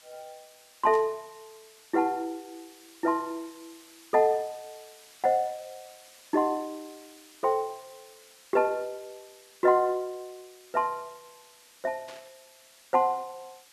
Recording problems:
hiss; slope +2 dB per octave, SNR 24 dB
burst of static; at 1 s and at 12 s; peak -14 dB vs average level

